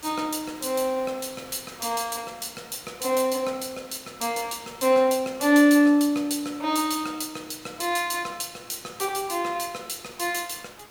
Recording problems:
hiss; slope -3 dB per octave, SNR 22 dB

